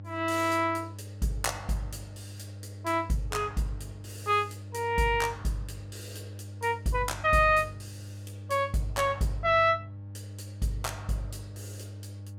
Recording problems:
hum; 50 Hz, harmonics up to 600 Hz, SNR 14 dB

